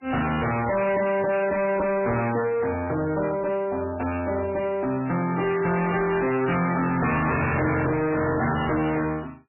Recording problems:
codec artefacts; MP3, log-spectral distance 5 dB, nothing above 2.8 kHz
distortion; soft clipping, signal-to-distortion ratio 6 dB

